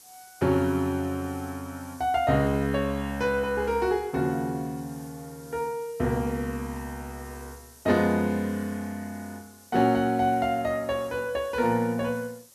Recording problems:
hiss; SNR 23 dB

